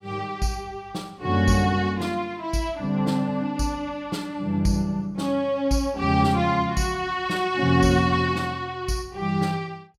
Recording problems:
none

